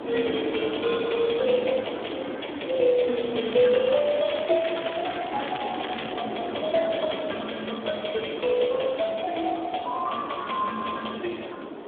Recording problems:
phone line; 240 Hz to 3.5 kHz, Speex
background hiss; SNR 26 dB
wind on the microphone; below 680 Hz, SNR 9 dB
crackle; from 3.5 to 6 s; loose cable, SNR 11 dB

